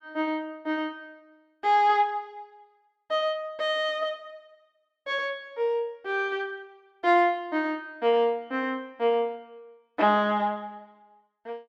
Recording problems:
none

